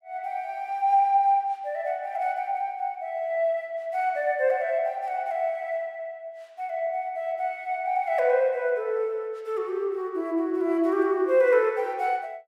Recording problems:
none

